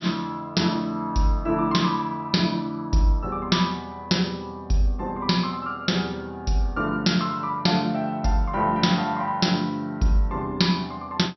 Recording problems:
low-pass filter; nothing above 5.7 kHz

